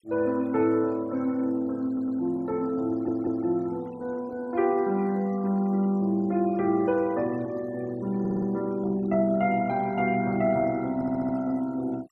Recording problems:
noise reduction artefacts; signal-to-artefact ratio 25 dB
stutter; 4 times, first at 2 s

